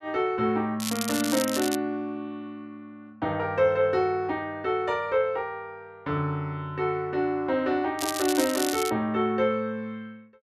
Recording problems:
crackle; at 1 s and at 8 s; loose cable, SNR 5 dB

